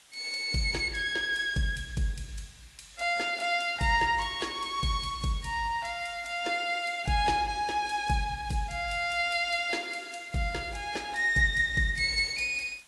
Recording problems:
codec artefacts; AAC, log-spectral distance 4 dB
background hiss; SNR 27 dB

